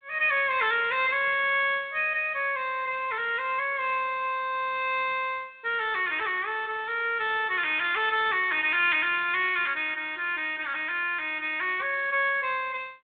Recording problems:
telephone audio; 320 Hz to 3.6 kHz, G.726

